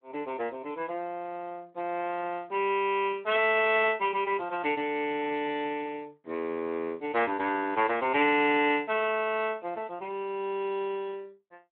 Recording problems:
telephone audio; 240 Hz to 3.4 kHz, Speex

